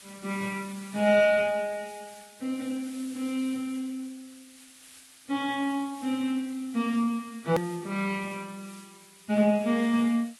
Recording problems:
lossy compression; Vorbis, then AAC, log-spectral distance 8 dB, nothing above 19.5 kHz
background hiss; slope +2 dB per octave, SNR 21 dB
edit click; at 7.5 s

